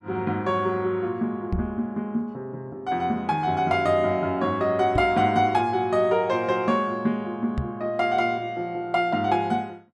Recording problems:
microphone bump; at 1.5 s, at 5 s and at 7.5 s; peak +1 dB vs average level

